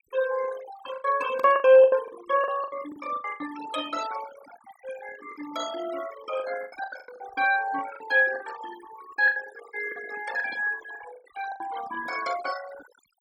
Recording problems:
noise reduction artefacts; signal-to-artefact ratio 14 dB
lost packets; 11% of the sound replaced, filled with the last packet

